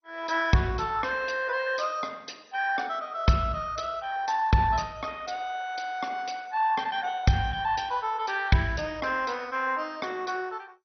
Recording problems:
codec artefacts; MP2, log-spectral distance 5 dB, nothing above 6 kHz

